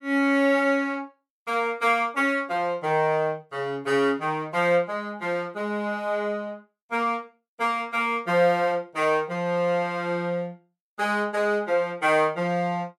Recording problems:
none

